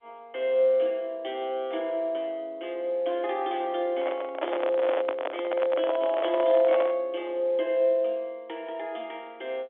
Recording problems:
phone line; 280 Hz to 3.5 kHz, G.711
handling noise; from 4 to 7 s; peak +1 dB vs average level

